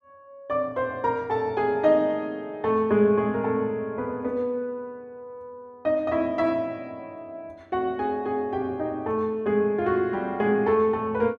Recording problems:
none

